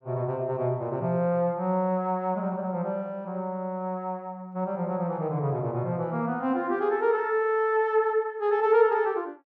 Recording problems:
none

